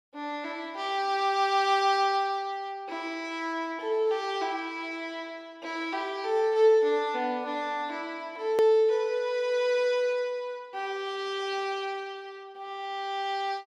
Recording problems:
click at an edit; at 8.5 s

